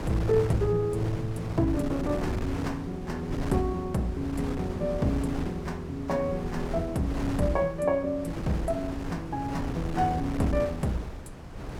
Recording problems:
wind noise; below 430 Hz, SNR 7 dB

